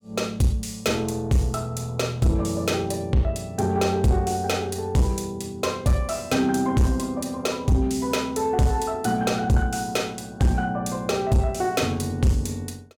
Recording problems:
distortion; soft clipping, signal-to-distortion ratio 10 dB

